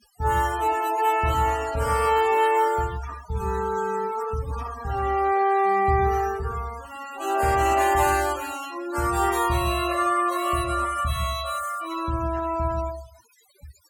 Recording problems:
noise reduction artefacts; signal-to-artefact ratio 15 dB

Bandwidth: 17 kHz